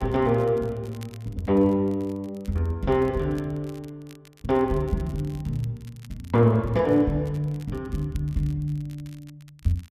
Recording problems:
crackling; vinyl, SNR 29 dB

